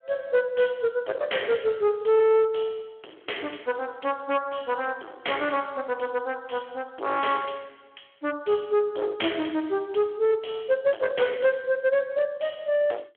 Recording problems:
telephone audio; 300 Hz to 3.3 kHz, Speex
distortion; hard clipping, uneven, signal-to-distortion ratio 8 dB

